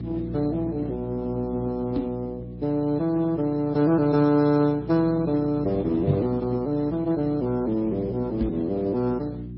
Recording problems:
codec artefacts; Speex, then MP3, log-spectral distance 2 dB, nothing above 5.5 kHz
electrical hum; 60 Hz, harmonics up to 360 Hz, SNR 10 dB
knock on the microphone; at 2 s, at 6 s and at 8.5 s; peak +3 dB vs average level

